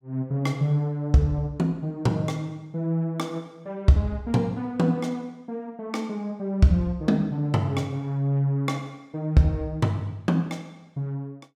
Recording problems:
none

